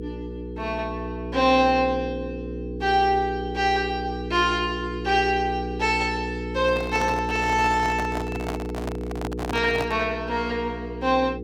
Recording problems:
hum; 60 Hz, harmonics up to 480 Hz, SNR 8 dB
microphone handling noise; from 6.5 to 10 s; peak -3 dB vs average level

